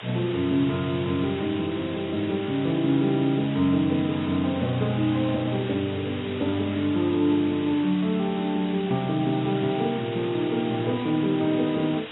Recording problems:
codec artefacts; AAC, log-spectral distance 14 dB, nothing above 11.3 kHz
hiss; SNR 14 dB

